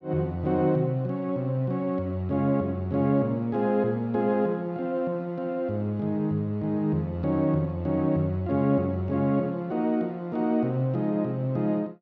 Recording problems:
none

